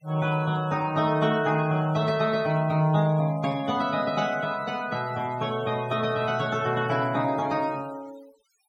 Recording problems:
denoising artefacts; signal-to-artefact ratio 20 dB

